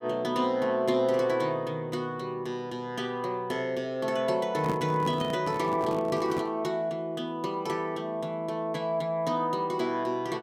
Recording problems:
microphone handling noise; from 4.5 to 6.5 s; peak -1 dB vs average level

